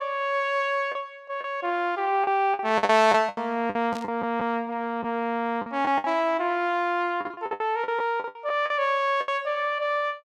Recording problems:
packet loss; 11% of the sound replaced, filled with the last packet
burst of static; at 4 s; peak -11 dB vs average level

